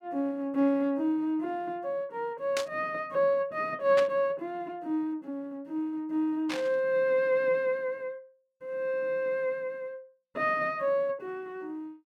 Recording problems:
burst of static; at 2.5 s, at 4 s and at 6.5 s; peak 0 dB vs average level

